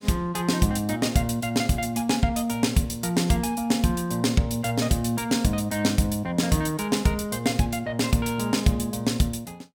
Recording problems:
none

